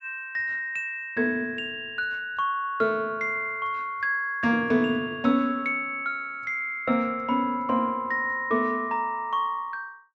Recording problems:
none

